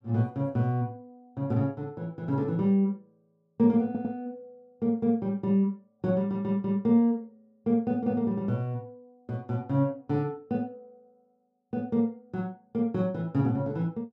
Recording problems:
audio stuttering; at 4 s

